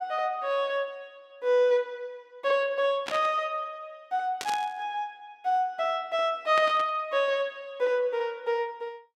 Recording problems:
burst of static; at 3 s, at 4.5 s and at 6.5 s; peak -2 dB vs average level

